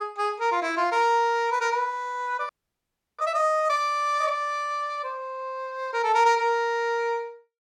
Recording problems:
audio freezing; at 2.5 s for 0.5 s

